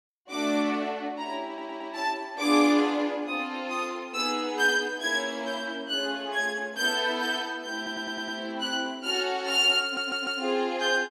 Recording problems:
audio stuttering; at 1.5 s, at 8 s and at 10 s

